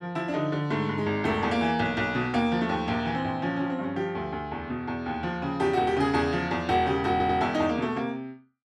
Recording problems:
audio stuttering; at 7 s

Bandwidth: 12.5 kHz